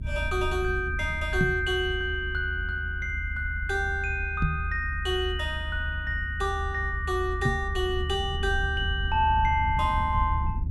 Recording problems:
rumble; below 76 Hz, SNR 5 dB
microphone thump; at 1.5 s, at 4.5 s and at 7.5 s; peak +6 dB vs average level

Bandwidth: 13.5 kHz